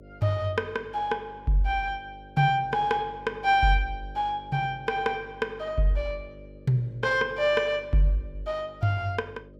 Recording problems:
hum; 50 Hz, harmonics up to 600 Hz, SNR 21 dB

